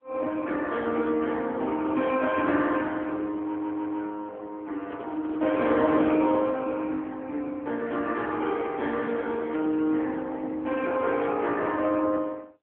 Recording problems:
phone line; 170 Hz to 3.5 kHz, AMR-NB
audio stuttering; at 3.5 s
handling noise; from 5 to 6.5 s; peak -7 dB vs average level

